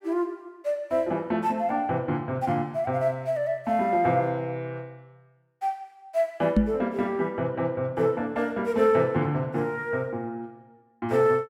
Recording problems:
knock on the microphone; at 6.5 s; peak +9 dB vs average level

